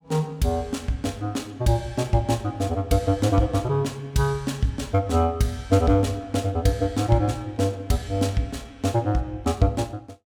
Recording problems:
none

